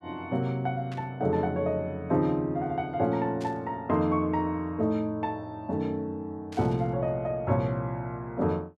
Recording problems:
burst of static; at 1 s, at 3.5 s and at 6.5 s; peak -13 dB vs average level

